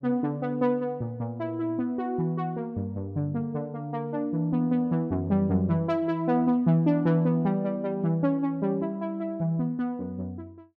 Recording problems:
none

